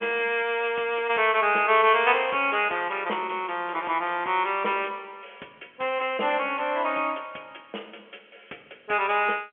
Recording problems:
telephone audio; 280 Hz to 3.2 kHz, G.711

